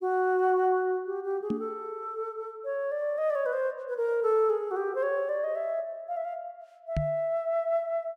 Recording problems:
microphone thump; at 1.5 s and at 7 s; peak +2 dB vs average level

